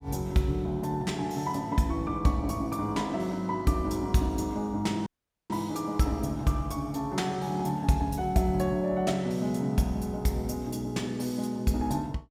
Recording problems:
dropout; at 5 s

